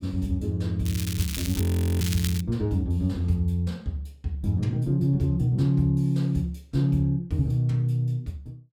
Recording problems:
crackle; from 1 to 2.5 s; loose cable, SNR 9 dB
audio freezing; at 1.5 s

